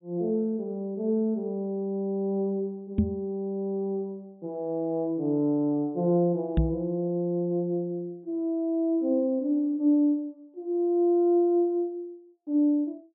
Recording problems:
treble missing; nothing above 4 kHz
microphone bump; at 3 s and at 6.5 s; peak +7 dB vs average level

